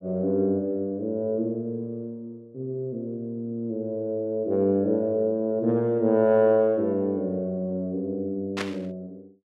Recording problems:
burst of static; at 8.5 s; peak -1 dB vs average level

